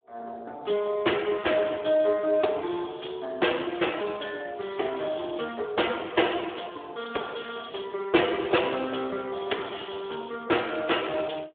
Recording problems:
phone line; 300 Hz to 3.6 kHz, Speex

